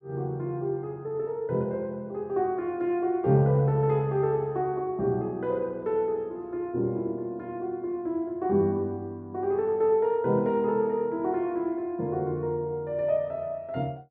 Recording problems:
none

